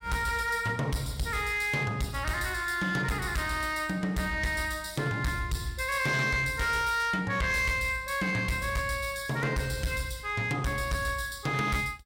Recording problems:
distorted audio; hard clipping, uneven, signal-to-distortion ratio 11 dB

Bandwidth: 16 kHz